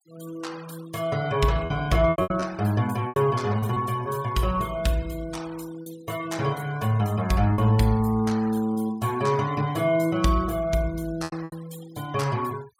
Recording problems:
noise reduction artefacts; signal-to-artefact ratio 21 dB
packet loss; 5% of the sound replaced, filled with repeated pitch periods

